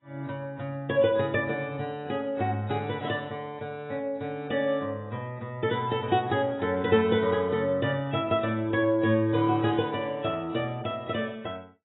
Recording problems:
lossy compression; AAC, log-spectral distance 2 dB, nothing above 3.6 kHz

